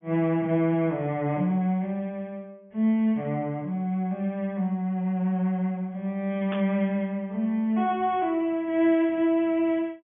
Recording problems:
treble missing; nothing above 3.4 kHz
burst of static; at 6.5 s; peak -7 dB vs average level

